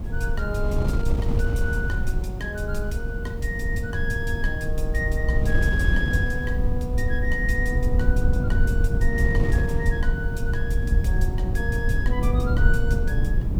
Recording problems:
hiss; slope +2 dB per octave, SNR 30 dB
low-frequency rumble; below 86 Hz, SNR -3 dB
wind noise; below 120 Hz, SNR 2 dB

